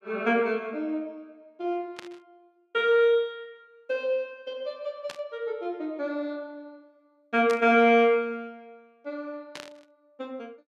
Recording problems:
burst of static; 4 times, first at 2 s; peak -8 dB vs average level

